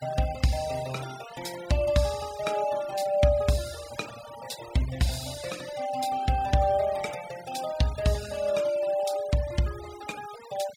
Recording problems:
noise reduction artefacts; signal-to-artefact ratio 16 dB

